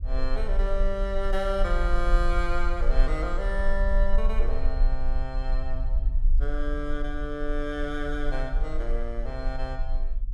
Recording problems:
rumble; below 38 Hz, strongest tone 20 Hz, SNR -2 dB

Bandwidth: 15 kHz